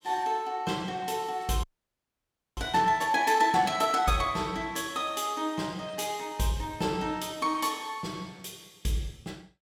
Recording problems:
frozen audio; at 1.5 s for 1 s

